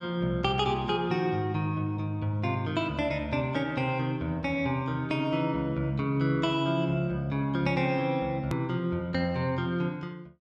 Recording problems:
hard cut with a click; at 8.5 s

